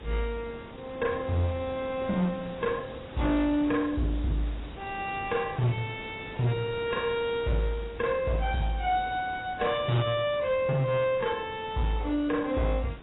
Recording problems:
codec artefacts; AAC, log-spectral distance 7 dB, nothing above 3.3 kHz
distorted audio; hard clipping, uneven, signal-to-distortion ratio 10 dB
background hiss; SNR 16 dB

